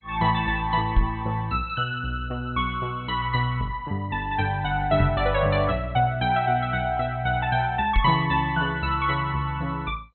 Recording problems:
lossy compression; MP2, log-spectral distance 3 dB, nothing above 3.6 kHz
knock on the microphone; at 1 s, at 5 s and at 8 s; peak +6 dB vs average level

